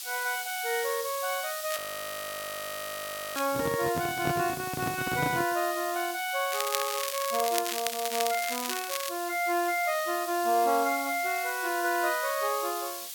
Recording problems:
background hiss; slope +5 dB per octave, SNR 8 dB
crackling; from 1.5 to 3.5 s and from 6.5 to 9 s; loose cable, SNR 5 dB
audio freezing; at 2 s for 1.5 s
handling noise; from 3.5 to 5.5 s; peak +2 dB vs average level

